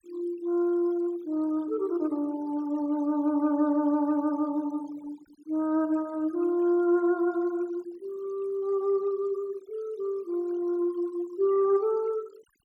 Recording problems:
noise reduction artefacts; signal-to-artefact ratio 25 dB

